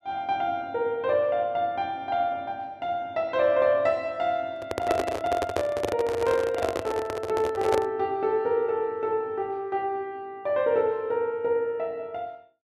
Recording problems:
handling noise; from 4.5 to 8 s; peak +4 dB vs average level

